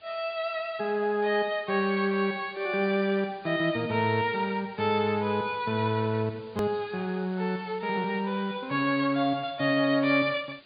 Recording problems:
treble missing; nothing above 4.8 kHz
background hiss; SNR 27 dB
click at an edit; at 6.5 s

